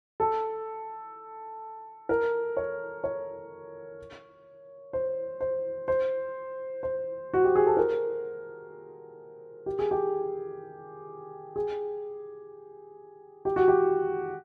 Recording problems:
none

